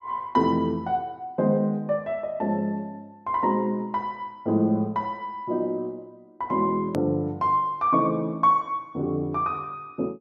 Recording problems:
edit click; at 7 s

